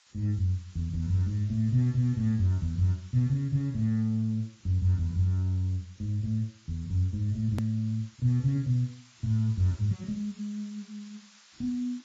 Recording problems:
lossy compression; AAC, then AAC, log-spectral distance 4 dB, nothing above 13.1 kHz
background hiss; SNR 27 dB
edit click; at 7.5 s

